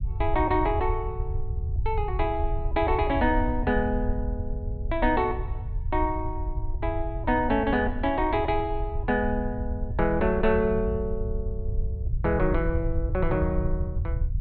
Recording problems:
low-pass filter; nothing above 4.6 kHz
rumble; below 80 Hz, SNR 5 dB

